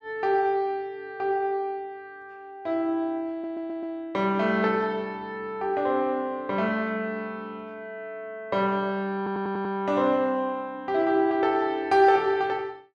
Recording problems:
stutter; at 3.5 s and at 9 s

